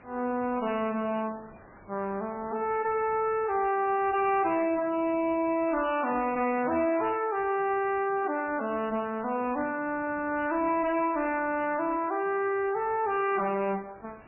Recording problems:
lossy codec; MP3, then MP3, log-spectral distance 4 dB, nothing above 2.4 kHz
distorted audio; hard clipping, uneven, signal-to-distortion ratio 11 dB
hiss; SNR 24 dB

